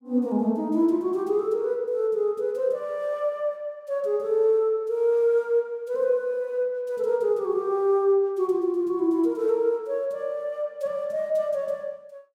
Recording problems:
none

